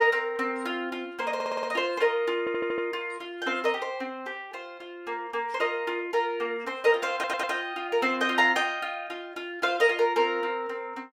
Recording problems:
audio stuttering; at 1.5 s, at 2.5 s and at 7 s

